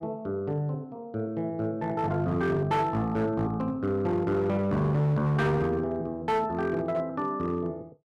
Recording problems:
distortion; hard clipping, uneven, signal-to-distortion ratio 11 dB

